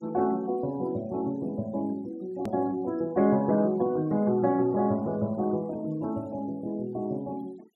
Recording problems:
denoising artefacts; signal-to-artefact ratio 27 dB
hard cut with a click; at 2.5 s

